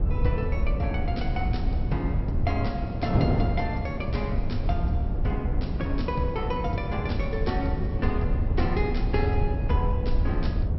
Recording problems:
treble cut off; nothing above 5.5 kHz
rumble; below 84 Hz, SNR -1 dB
wind noise; below 320 Hz, SNR 1 dB

